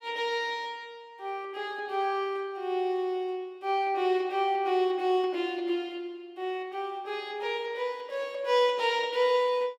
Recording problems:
none

